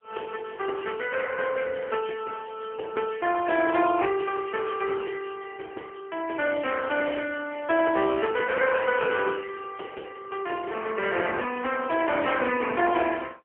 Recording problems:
phone line; 300 Hz to 3.1 kHz, AMR-NB, then MP3

